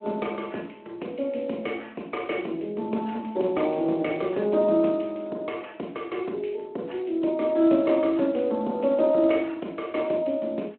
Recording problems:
telephone audio; 220 Hz to 3.4 kHz, Speex

